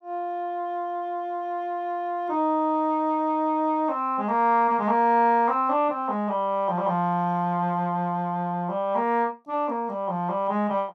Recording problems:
none

